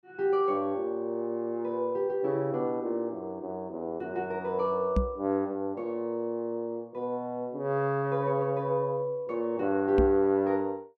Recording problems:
microphone bump; at 5 s and at 10 s; peak +6 dB vs average level

